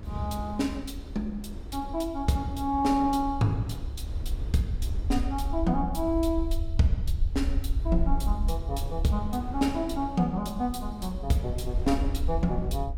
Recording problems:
electrical hum; 50 Hz, harmonics up to 500 Hz, SNR 21 dB
rumble; below 66 Hz, SNR 5 dB
wind noise; below 410 Hz, SNR 17 dB

